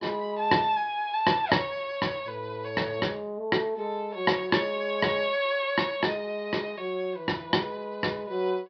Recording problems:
treble cut off; nothing above 5.5 kHz

